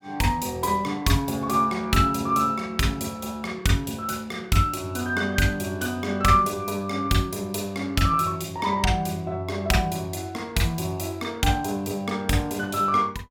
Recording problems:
none

